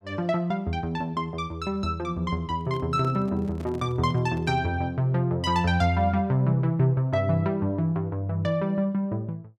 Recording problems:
microphone handling noise; from 2.5 to 4.5 s; peak -11 dB vs average level

